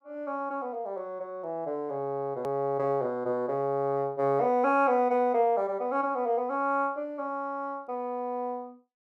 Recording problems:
click at an edit; at 2.5 s

